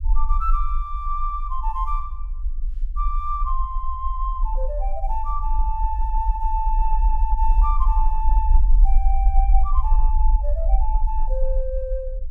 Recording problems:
low-frequency rumble; below 44 Hz, strongest tone 24 Hz, SNR -5 dB

